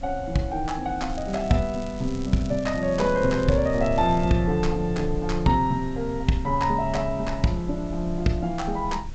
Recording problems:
treble missing; nothing above 8 kHz
background hiss; slope -2 dB per octave, SNR 25 dB
rumble; below 74 Hz, strongest tone 22 Hz, SNR 12 dB
crackle; from 1 to 4.5 s; loose cable, SNR 22 dB

